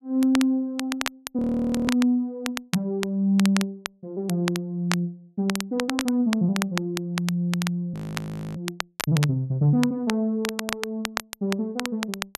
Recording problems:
crackling; vinyl, SNR 8 dB
audio freezing; at 1.5 s and at 8 s for 0.5 s

